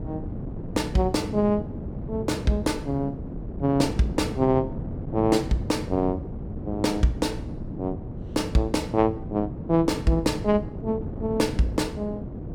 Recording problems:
wind on the microphone; below 270 Hz, SNR 8 dB

